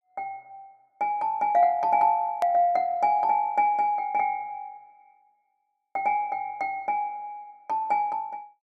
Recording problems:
click at an edit; at 2.5 s

